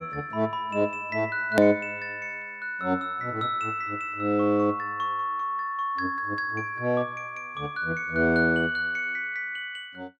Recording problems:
hard cut with a click; at 1.5 s

